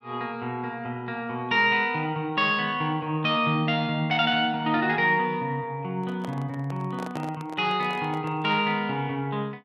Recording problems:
microphone handling noise; from 6 to 8.5 s; peak -7 dB vs average level

